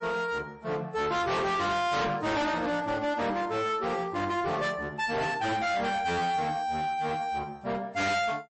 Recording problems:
codec artefacts; MP3, log-spectral distance 2 dB, nothing above 8 kHz
distorted audio; hard clipping, signal-to-distortion ratio 6 dB

